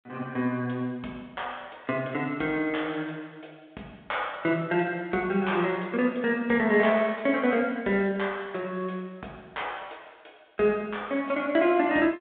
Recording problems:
phone line; 280 Hz to 3.6 kHz, G.726

